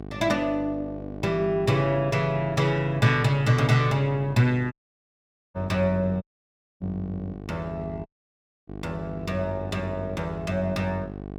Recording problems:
hum; 50 Hz, harmonics up to 1.1 kHz, SNR 13 dB
audio cutting out; at 4.5 s for 1 s, at 6 s for 0.5 s and at 8 s for 0.5 s

